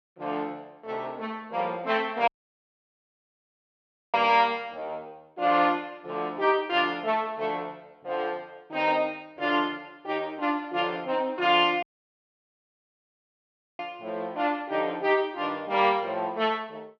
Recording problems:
dropout; at 2.5 s for 2 s and at 12 s for 2 s

